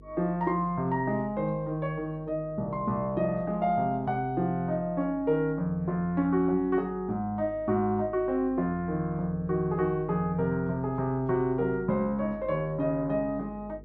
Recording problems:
hum; 50 Hz, harmonics up to 500 Hz, SNR 21 dB

